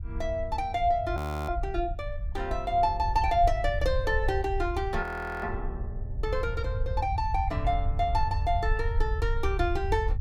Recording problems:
rumble; below 78 Hz, SNR 4 dB
frozen audio; at 1 s and at 5 s

